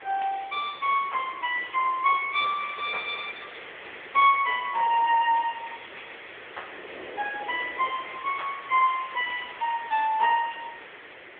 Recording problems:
telephone audio; 430 Hz to 3.5 kHz, AMR-NB
hiss; SNR 17 dB
wind noise; below 690 Hz, SNR 22 dB

